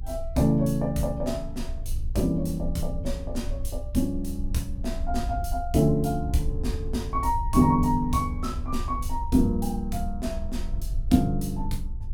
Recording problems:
low-frequency rumble; below 64 Hz, strongest tone 22 Hz, SNR 7 dB

